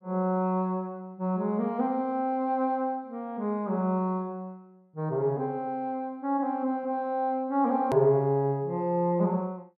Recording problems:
edit click; at 8 s

